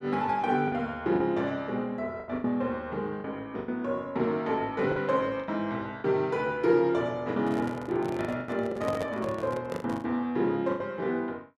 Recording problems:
lost packets; 9% of the sound replaced, filled with the last packet
handling noise; from 7.5 to 10 s; peak -2 dB vs average level

